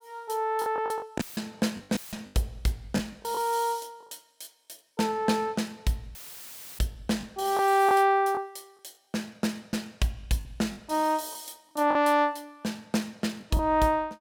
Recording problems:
lost packets; 6% of the sound replaced, filled with the last packet
audio cutting out; at 1 s, at 2 s and at 6 s for 0.5 s; filled with static

